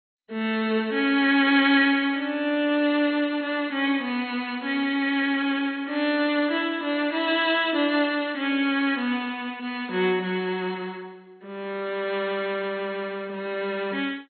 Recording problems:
lossy compression; MP2, log-spectral distance 3 dB, nothing above 4.1 kHz

